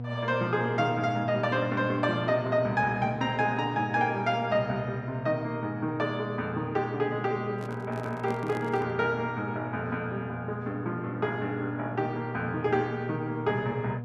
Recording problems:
hum; 60 Hz, harmonics up to 720 Hz, SNR 8 dB
microphone handling noise; from 7.5 to 9 s; peak -5 dB vs average level

